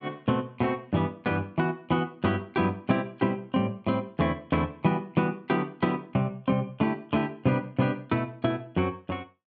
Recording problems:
none

